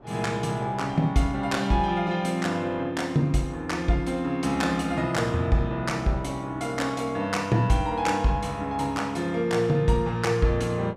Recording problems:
wind noise; below 810 Hz, SNR 24 dB

